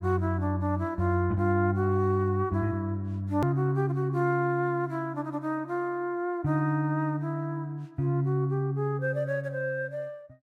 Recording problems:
click at an edit; at 3.5 s

